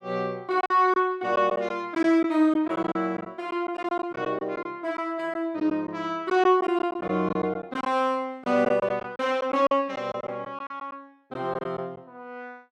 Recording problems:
packet loss; 9% of the sound replaced, filled with silence

